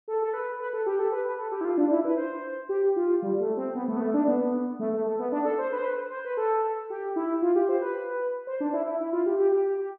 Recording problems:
none

